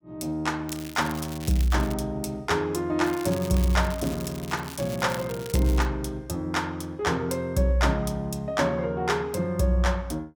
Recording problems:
crackle; from 0.5 to 2 s and from 3 to 6 s; loose cable, SNR 15 dB

